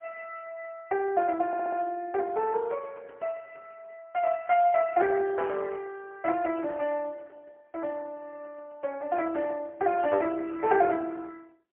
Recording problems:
phone line; 320 Hz to 3.2 kHz, AMR-NB, then MP3
audio stuttering; at 1.5 s

